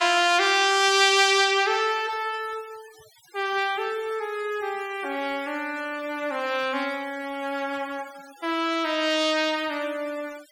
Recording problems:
noise reduction artefacts; signal-to-artefact ratio 22 dB

